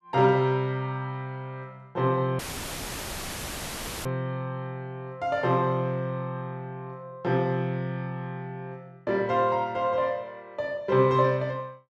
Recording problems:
dropout; at 2.5 s for 1.5 s; filled with static

